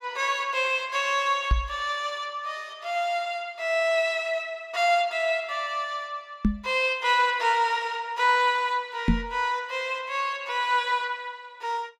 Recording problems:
microphone thump; at 1.5 s, at 6.5 s and at 9 s; peak +7 dB vs average level

